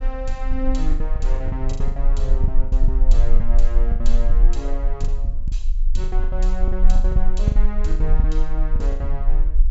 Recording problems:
low-pass filter; nothing above 8 kHz
rumble; below 38 Hz, strongest tone 18 Hz, SNR -8 dB
lost packets; 15% of the sound replaced, filled with the last packet

